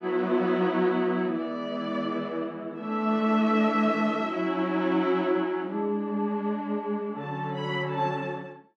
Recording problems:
none

